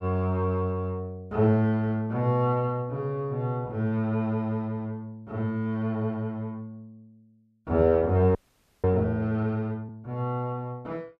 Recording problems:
audio freezing; at 8.5 s

